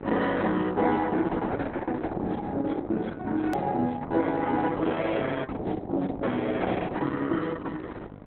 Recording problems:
lossy compression; Opus, log-spectral distance 4 dB, nothing above 16.6 kHz
hum; 50 Hz, harmonics up to 1.5 kHz, SNR 13 dB
click at an edit; at 3.5 s

